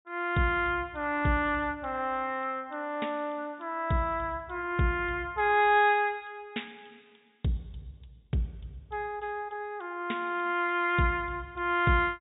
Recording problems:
treble missing; nothing above 4 kHz

